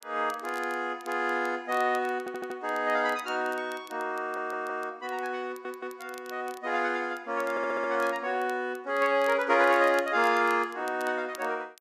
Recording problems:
crackle; vinyl, SNR 24 dB
stutter; 4 times, first at 2 s

